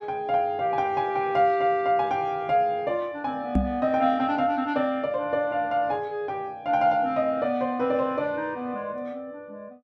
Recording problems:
knock on the microphone; at 3.5 s; peak +5 dB vs average level

